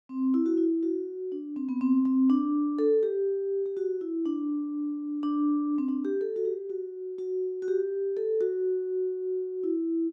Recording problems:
none

